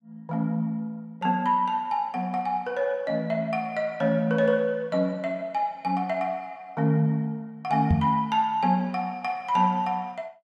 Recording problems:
knock on the microphone; at 8 s; peak +7 dB vs average level

